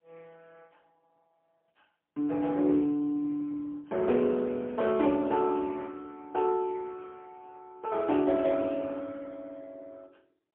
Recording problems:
phone line; 190 Hz to 3.3 kHz, AMR-NB, then MP3

